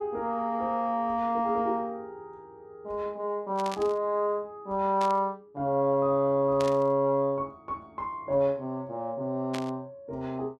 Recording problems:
burst of static; 4 times, first at 3.5 s; peak -5 dB vs average level

